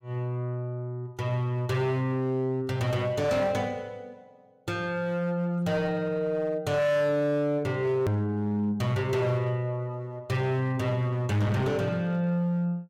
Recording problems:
distortion; hard clipping, signal-to-distortion ratio 11 dB
edit click; at 8 s

